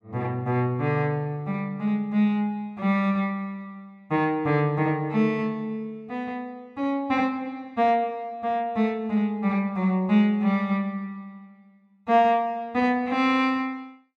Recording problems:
none

